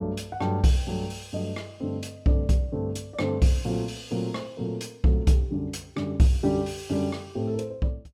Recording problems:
none

